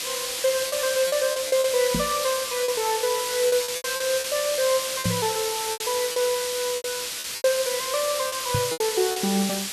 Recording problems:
background hiss; SNR 2 dB
lost packets; 10% of the sound replaced, filled with repeated pitch periods
knock on the microphone; at 2 s, at 5 s and at 8.5 s; peak +3 dB vs average level

